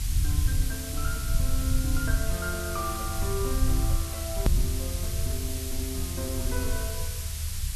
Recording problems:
background hiss; slope +4 dB per octave, SNR 0 dB
rumble; below 80 Hz, SNR -5 dB
edit click; at 4.5 s

